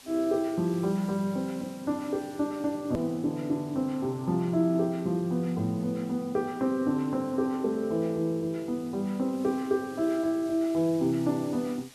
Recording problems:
hiss; SNR 23 dB
edit click; at 3 s

